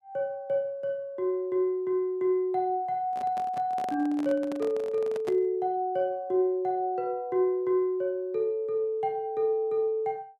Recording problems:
microphone handling noise; from 3 to 5.5 s; peak -6 dB vs average level

